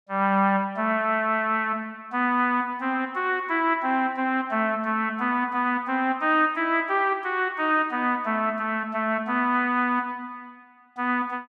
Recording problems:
none

